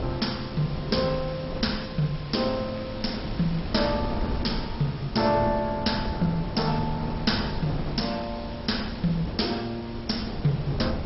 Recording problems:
lossy codec; MP2, log-spectral distance 10 dB, nothing above 5.5 kHz
background hiss; slope -1 dB per octave, SNR 16 dB
wind noise; below 340 Hz, SNR 7 dB
crackling; from 2.5 to 4.5 s; loose cable, SNR 24 dB

